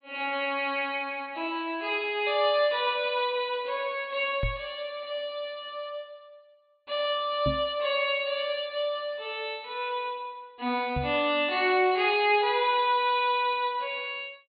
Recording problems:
low-pass filter; nothing above 4.6 kHz
microphone thump; at 4.5 s, at 7.5 s and at 11 s; peak 0 dB vs average level

